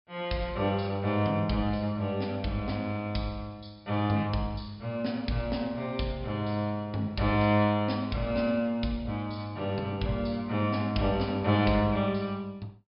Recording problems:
low-pass filter; nothing above 5.5 kHz

